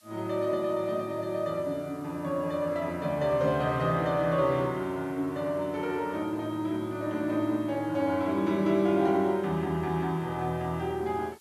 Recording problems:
hiss; slope +3 dB per octave, SNR 29 dB

